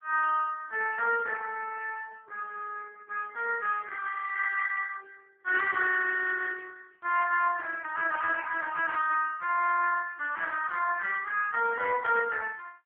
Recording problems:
telephone audio; 370 Hz to 2.6 kHz, AMR-NB

